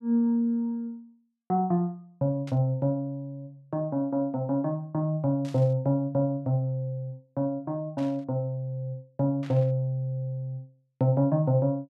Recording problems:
static burst; 4 times, first at 2.5 s; peak -15 dB vs average level

